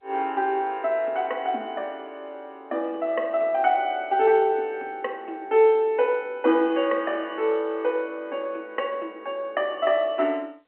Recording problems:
telephone audio; 240 Hz to 3.2 kHz, G.711

